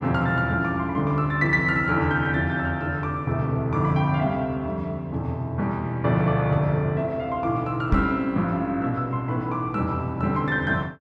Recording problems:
microphone thump; at 8 s; peak +4 dB vs average level

